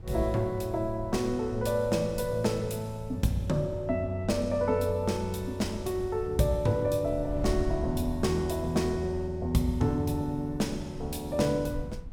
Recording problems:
wind noise; below 100 Hz, SNR 13 dB

